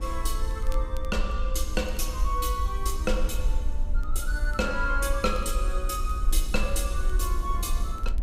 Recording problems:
hum; 60 Hz, harmonics up to 1 kHz, SNR 17 dB
rumble; below 48 Hz, SNR 0 dB
wind on the microphone; below 460 Hz, SNR 18 dB
crackling; vinyl, SNR 26 dB

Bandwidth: 15.5 kHz